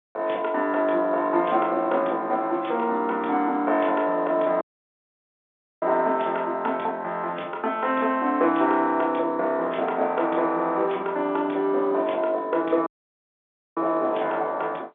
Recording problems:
telephone audio; 260 Hz to 3.7 kHz, G.711
dropout; at 4.5 s for 1 s and at 13 s for 1 s

